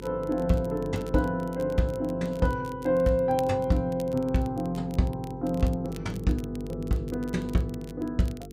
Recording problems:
hum; 50 Hz, harmonics up to 450 Hz, SNR 12 dB
crackle; vinyl, SNR 24 dB

